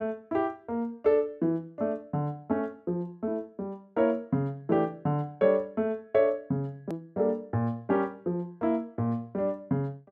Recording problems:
edit click; at 7 s

